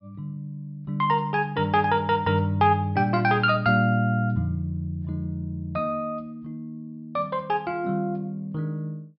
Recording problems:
treble cut off; nothing above 5.5 kHz

